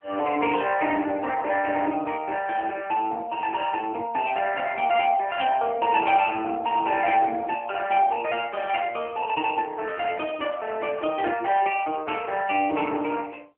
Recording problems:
phone line; 260 Hz to 3.5 kHz, AMR-NB

